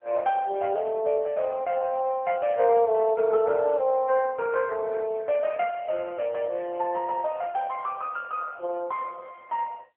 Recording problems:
phone line; 370 Hz to 3.1 kHz, AMR-NB

